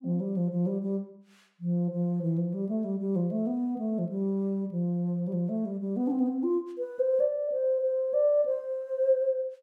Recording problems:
none

